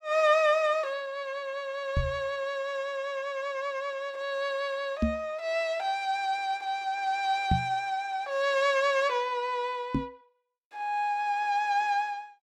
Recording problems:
microphone thump; 4 times, first at 2 s; peak +6 dB vs average level

